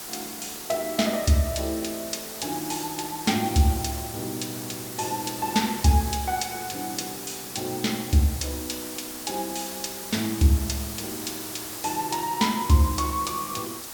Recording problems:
background hiss; slope -2 dB per octave, SNR 8 dB

